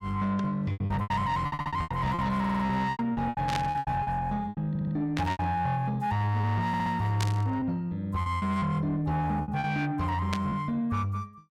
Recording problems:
distortion; soft clipping, signal-to-distortion ratio 12 dB
packet loss; 11% of the sound replaced, filled with repeated pitch periods
stutter; 4 times, first at 1.5 s
burst of static; 4 times, first at 3.5 s; peak 0 dB vs average level

